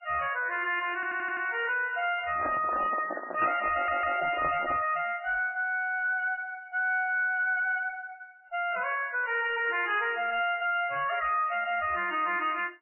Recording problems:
lossy codec; MP3, then MP3, log-spectral distance 4 dB, nothing above 2.8 kHz
distorted audio; soft clipping, signal-to-distortion ratio 10 dB
stutter; at 1 s and at 3.5 s
microphone handling noise; from 2.5 to 5 s; peak +1 dB vs average level

